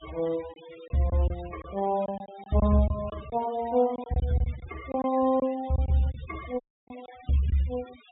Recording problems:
low-pass filter; nothing above 4 kHz
noise reduction artefacts; signal-to-artefact ratio 20 dB
packet loss; 7% of the sound replaced, filled with silence
audio cutting out; at 6.5 s

